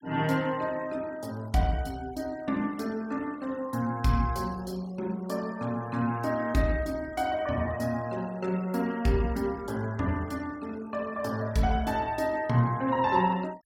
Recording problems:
noise reduction artefacts; signal-to-artefact ratio 23 dB

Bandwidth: 16.5 kHz